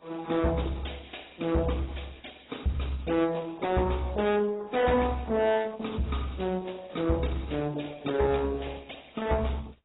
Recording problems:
lossy compression; Opus, then AAC, log-spectral distance 8 dB, nothing above 3.8 kHz
distortion; soft clipping, signal-to-distortion ratio 7 dB

